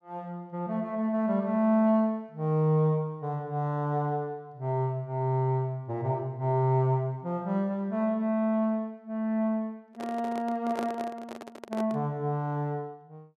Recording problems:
handling noise; from 10 to 12 s; peak -3 dB vs average level

